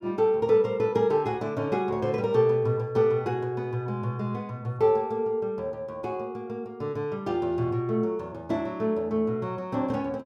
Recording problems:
none

